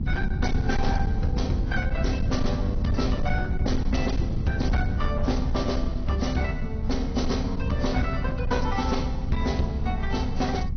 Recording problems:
treble cut off; nothing above 6.2 kHz
codec artefacts; AAC, log-spectral distance 2 dB
distortion; hard clipping, uneven, signal-to-distortion ratio 11 dB
low-frequency rumble; below 110 Hz, SNR 0 dB

